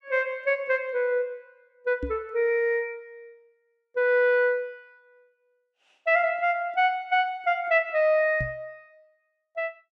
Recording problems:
knock on the microphone; at 2 s and at 8.5 s; peak -4 dB vs average level

